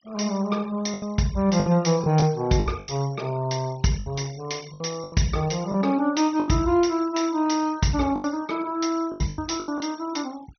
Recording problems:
treble cut off; nothing above 6.2 kHz
noise reduction artefacts; signal-to-artefact ratio 23 dB
lost packets; 9% of the sound replaced, filled with the last packet

